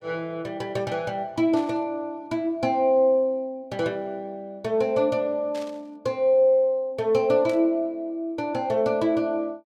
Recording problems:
static burst; at 1.5 s, at 5.5 s and at 7.5 s; peak -13 dB vs average level

